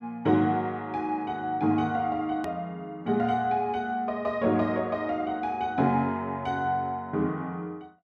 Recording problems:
click at an edit; at 2.5 s

